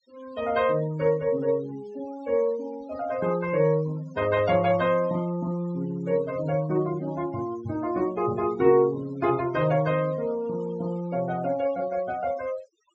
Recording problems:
low-pass filter; nothing above 8 kHz
noise reduction artefacts; signal-to-artefact ratio 20 dB

